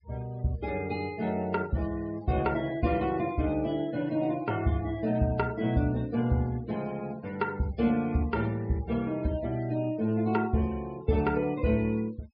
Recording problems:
treble missing; nothing above 5.5 kHz
denoising artefacts; signal-to-artefact ratio 22 dB

